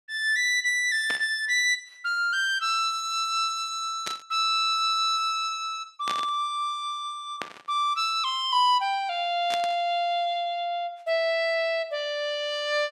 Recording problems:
static burst; 5 times, first at 1 s; peak -3 dB vs average level

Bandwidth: 13.5 kHz